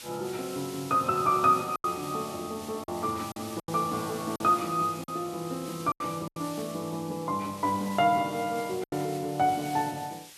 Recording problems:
hiss; slope +2 dB per octave, SNR 14 dB
packet loss; 5% of the sound replaced, filled with silence

